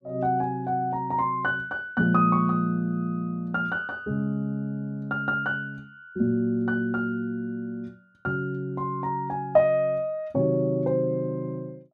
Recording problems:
none

